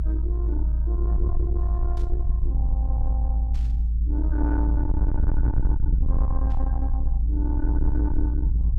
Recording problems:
distorted audio; soft clipping, signal-to-distortion ratio 7 dB
low-frequency rumble; below 58 Hz, strongest tone 56 Hz, SNR -9 dB
static burst; at 2 s, at 3.5 s and at 6.5 s; peak -13 dB vs average level

